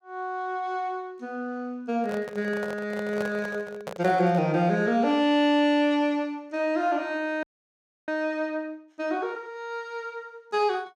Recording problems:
microphone handling noise; from 2 to 4.5 s; peak -4 dB vs average level
audio freezing; at 7.5 s for 0.5 s

